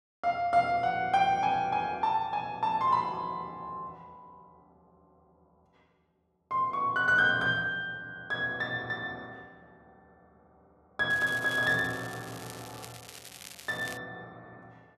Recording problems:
crackle; from 11 to 14 s; loose cable, SNR 17 dB

